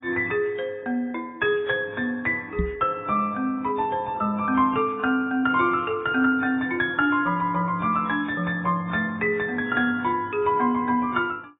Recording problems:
lossy codec; AAC, log-spectral distance 2 dB, nothing above 3.2 kHz
microphone thump; at 2.5 s; peak +1 dB vs average level

